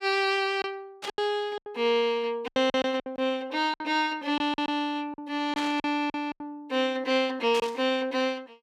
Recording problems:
lost packets; 9% of the sound replaced, filled with silence
static burst; at 1 s, at 5.5 s and at 7.5 s; peak -4 dB vs average level

